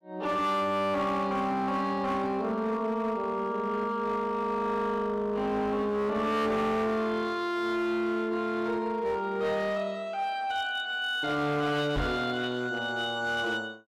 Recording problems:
distorted audio; hard clipping, signal-to-distortion ratio 12 dB
knock on the microphone; at 12 s; peak +1 dB vs average level

